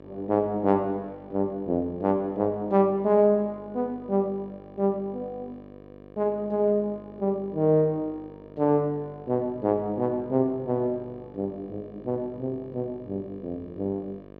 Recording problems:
hum; 50 Hz, harmonics up to 1.9 kHz, SNR 20 dB

